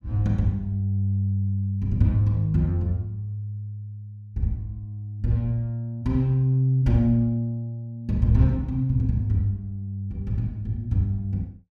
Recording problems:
none

